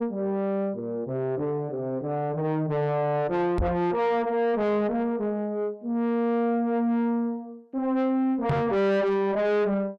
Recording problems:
distorted audio; soft clipping, signal-to-distortion ratio 7 dB
microphone bump; at 3.5 s and at 8.5 s; peak +5 dB vs average level

